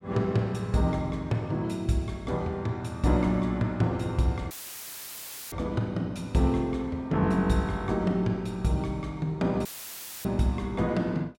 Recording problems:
dropout; at 4.5 s for 1 s and at 9.5 s for 0.5 s; filled with static

